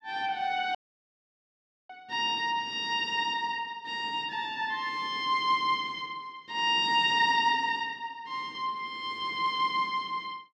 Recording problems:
audio cutting out; at 1 s for 1 s

